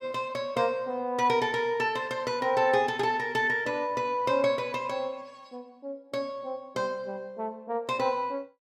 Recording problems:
none

